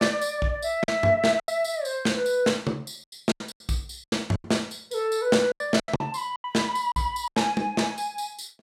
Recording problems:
packet loss; 11% of the sound replaced, filled with silence

